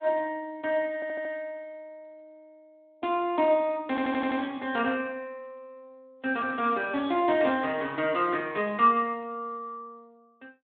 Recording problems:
telephone audio; 170 Hz to 3.6 kHz, Speex
audio stuttering; at 1 s and at 4 s

